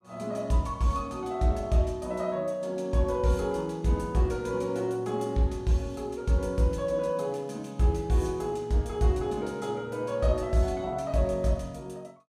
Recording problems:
none

